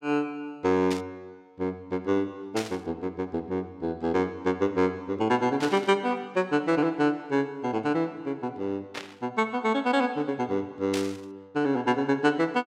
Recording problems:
burst of static; 5 times, first at 1 s; peak -2 dB vs average level

